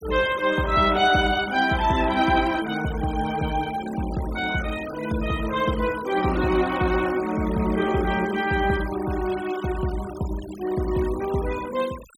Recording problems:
noise reduction artefacts; signal-to-artefact ratio 17 dB

